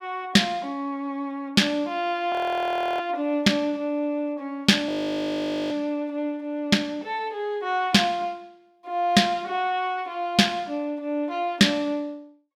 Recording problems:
audio freezing; at 2.5 s for 0.5 s and at 5 s for 1 s

